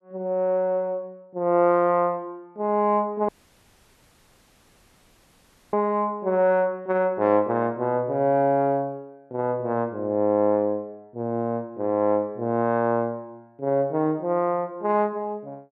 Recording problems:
dropout; at 3.5 s for 2.5 s

